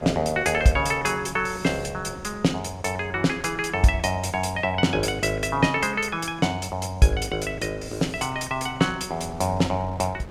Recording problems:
wind noise; below 500 Hz, SNR 20 dB

